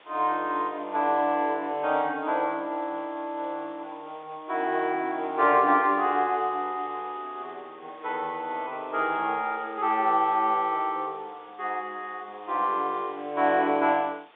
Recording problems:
telephone audio; 240 Hz to 3.8 kHz, G.711
background hiss; SNR 27 dB

